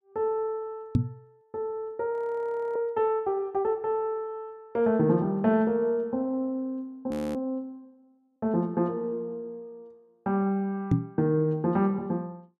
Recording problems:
microphone bump; at 1 s and at 11 s; peak +9 dB vs average level
audio freezing; at 2 s for 0.5 s and at 7 s

